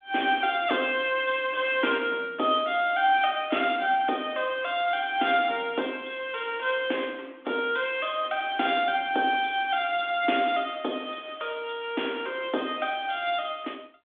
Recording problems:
telephone audio; 240 Hz to 3.6 kHz, G.726

